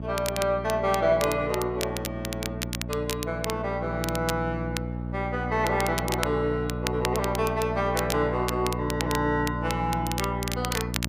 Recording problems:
hum; 60 Hz, harmonics up to 900 Hz, SNR 5 dB
crackle; vinyl, SNR 8 dB

